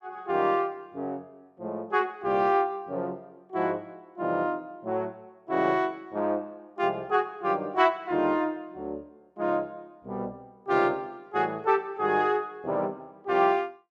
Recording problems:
none

